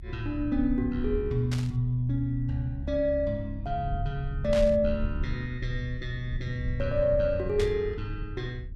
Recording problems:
low-frequency rumble; below 78 Hz, SNR 8 dB
static burst; at 1.5 s, at 4.5 s and at 7.5 s; peak -4 dB vs average level

